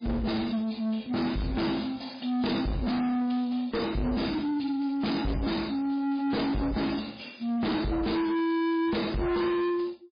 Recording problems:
lossy compression; MP3, log-spectral distance 6 dB
distorted audio; soft clipping, signal-to-distortion ratio 6 dB

